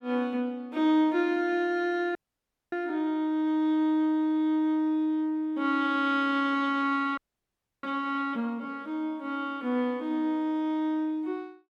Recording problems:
frozen audio; at 2 s for 0.5 s and at 7 s for 0.5 s

